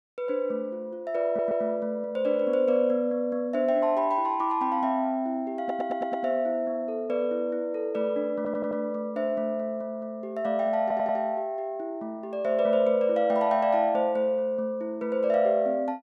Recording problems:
audio stuttering; 4 times, first at 1.5 s

